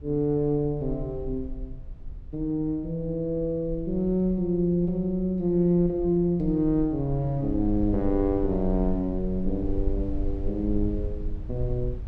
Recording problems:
low-frequency rumble; below 54 Hz, SNR 11 dB

